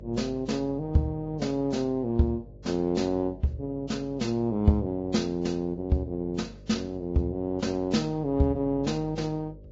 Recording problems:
lossy codec; Vorbis, log-spectral distance 2 dB, nothing above 7.3 kHz
hum; 50 Hz, harmonics up to 600 Hz, SNR 19 dB

